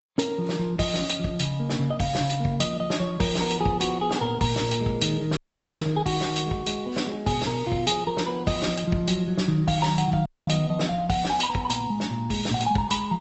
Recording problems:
treble missing; nothing above 7.8 kHz
lossy codec; Vorbis, then Opus, log-spectral distance 4 dB
dropout; at 5.5 s and at 10 s

